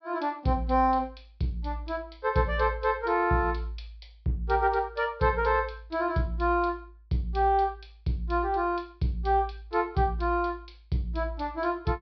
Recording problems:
low-pass filter; nothing above 5.5 kHz

